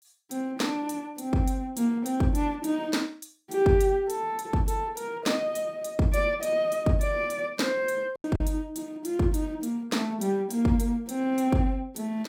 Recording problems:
lost packets; 1% of the sound replaced, filled with silence

